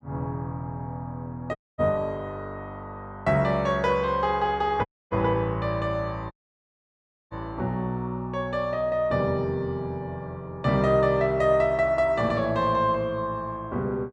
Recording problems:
dropout; at 1.5 s, at 5 s and at 6.5 s for 1 s

